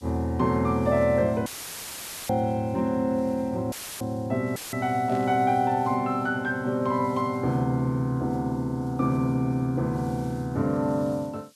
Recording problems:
hiss; slope +5 dB per octave, SNR 28 dB
audio cutting out; at 1.5 s for 1 s, at 3.5 s and at 4.5 s; filled with static
static burst; at 5 s; peak -16 dB vs average level

